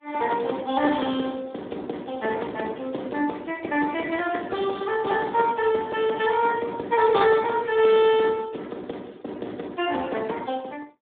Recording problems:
phone line; 220 Hz to 3.5 kHz, Speex

